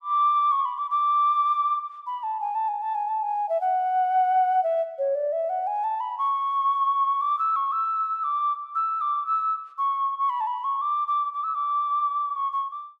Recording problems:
none

